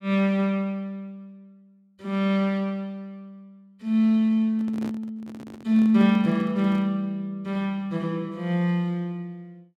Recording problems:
handling noise; from 4.5 to 7 s; peak -8 dB vs average level

